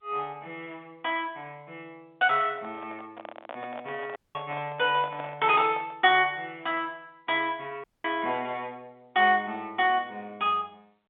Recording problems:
telephone audio; 280 Hz to 3.6 kHz, G.711
microphone handling noise; from 2.5 to 6 s; peak -8 dB vs average level
audio cutting out; at 4 s and at 8 s

